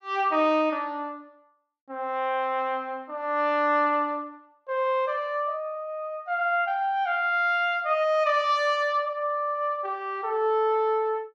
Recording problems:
none

